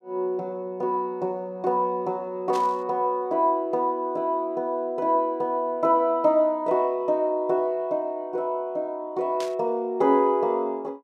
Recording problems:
burst of static; at 2.5 s and at 9.5 s; peak -9 dB vs average level

